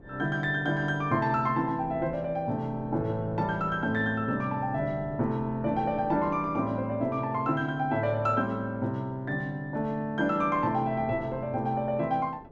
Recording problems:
wind noise; below 440 Hz, SNR 19 dB

